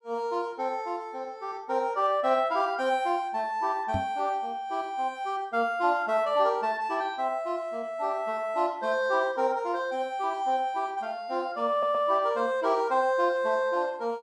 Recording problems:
knock on the microphone; at 4 s; peak -1 dB vs average level
audio stuttering; at 12 s

